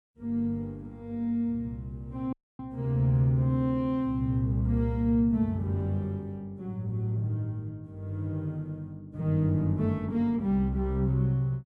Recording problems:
audio cutting out; at 2.5 s

